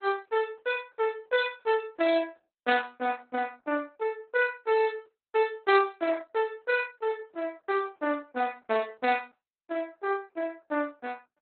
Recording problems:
codec artefacts; Opus, log-spectral distance 3 dB, nothing above 4 kHz

